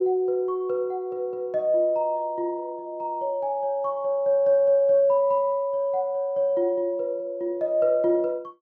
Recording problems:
none

